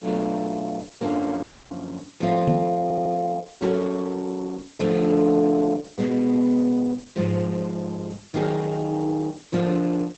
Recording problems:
codec artefacts; Opus, log-spectral distance 7 dB, nothing above 8 kHz
hiss; slope +1 dB per octave, SNR 26 dB
dropout; at 1.5 s
knock on the microphone; at 2.5 s; peak +6 dB vs average level
audio stuttering; at 3 s

